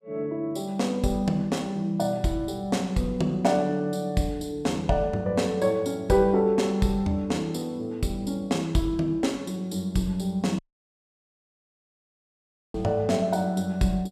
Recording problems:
dropout; at 11 s for 2 s

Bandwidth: 15 kHz